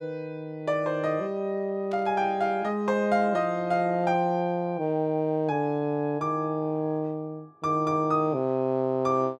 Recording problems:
burst of static; at 2 s; peak -17 dB vs average level

